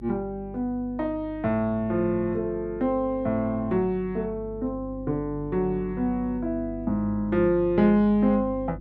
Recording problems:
electrical hum; 50 Hz, harmonics up to 350 Hz, SNR 16 dB

